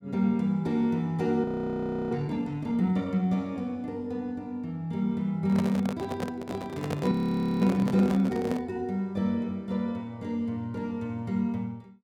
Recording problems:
audio freezing; at 1.5 s for 0.5 s and at 7 s
handling noise; from 5.5 to 8.5 s; peak -1 dB vs average level

